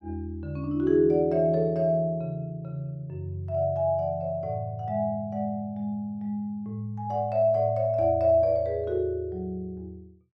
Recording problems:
none

